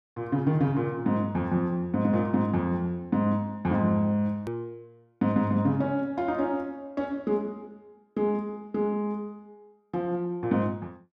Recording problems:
click at an edit; at 4.5 s

